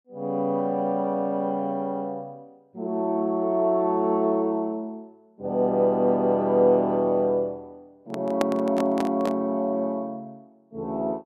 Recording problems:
handling noise; from 8 to 9.5 s; peak +3 dB vs average level

